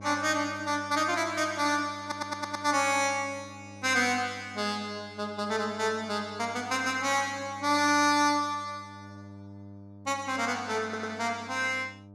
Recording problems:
hum; 50 Hz, harmonics up to 1 kHz, SNR 20 dB
stutter; at 2 s and at 11 s

